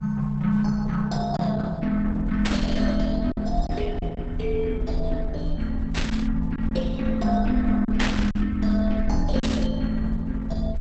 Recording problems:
lossy codec; Opus, log-spectral distance 3 dB, nothing above 7.3 kHz
rumble; below 62 Hz, SNR 6 dB
packet loss; 3% of the sound replaced, filled with silence
static burst; 4 times, first at 2.5 s; peak +3 dB vs average level

